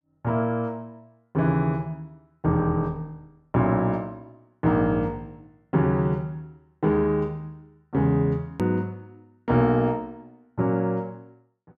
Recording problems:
edit click; at 8.5 s

